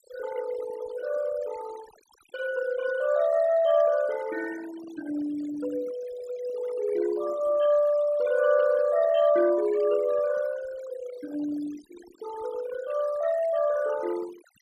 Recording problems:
denoising artefacts; signal-to-artefact ratio 17 dB

